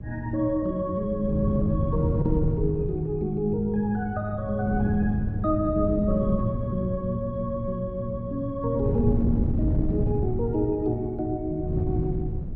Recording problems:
wind on the microphone; below 180 Hz, SNR 3 dB

